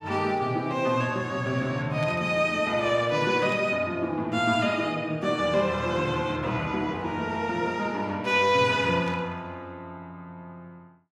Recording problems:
burst of static; at 2 s, at 3.5 s and at 9 s; peak -12 dB vs average level

